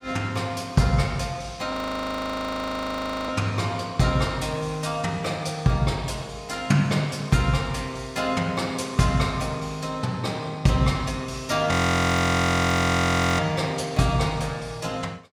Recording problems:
frozen audio; at 1.5 s for 1.5 s and at 12 s for 1.5 s

